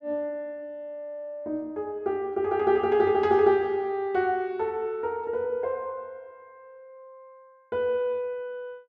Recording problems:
none

